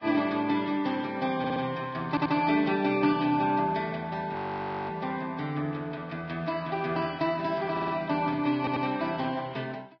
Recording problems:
lossy codec; Vorbis, log-spectral distance 3 dB, nothing above 5 kHz
audio stuttering; 4 times, first at 1.5 s
audio freezing; at 4.5 s for 0.5 s

